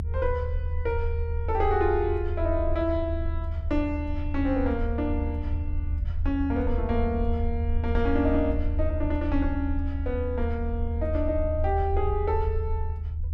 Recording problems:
low-frequency rumble; below 78 Hz, SNR 1 dB

